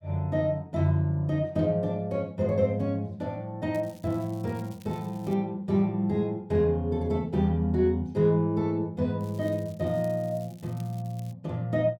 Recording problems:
crackle; from 3.5 to 5.5 s and from 9 to 11 s; loose cable, SNR 27 dB

